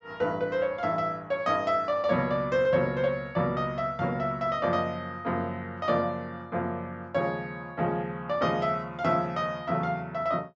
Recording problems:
treble missing; nothing above 8 kHz

